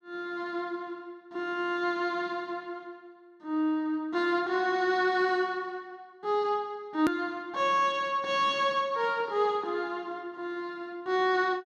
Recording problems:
hard cut with a click; at 7 s

